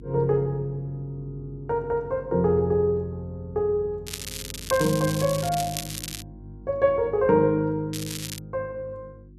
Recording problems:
electrical hum; 50 Hz, harmonics up to 350 Hz, SNR 20 dB
crackling; from 4 to 6 s and at 8 s; loose cable, SNR 9 dB

